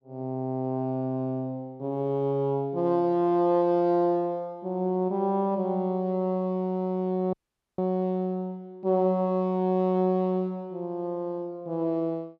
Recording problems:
audio cutting out; at 7.5 s

